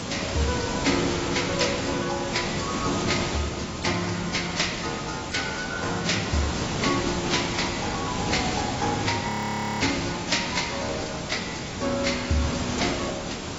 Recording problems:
lossy codec; AAC, log-spectral distance 17 dB, nothing above 7.6 kHz
hiss; slope -4 dB per octave, SNR 2 dB
audio freezing; at 9.5 s for 0.5 s

